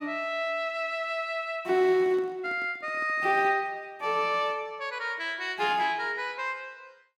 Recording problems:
handling noise; from 2 to 3.5 s; peak -12 dB vs average level

